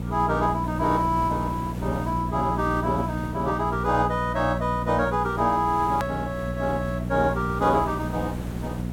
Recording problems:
hum; 60 Hz, harmonics up to 540 Hz, SNR 6 dB
hiss; slope -7 dB per octave, SNR 14 dB
hard cut with a click; at 6 s

